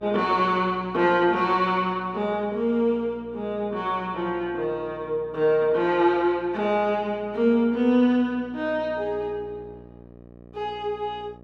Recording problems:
mains hum; 60 Hz, harmonics up to 1.3 kHz, SNR 23 dB

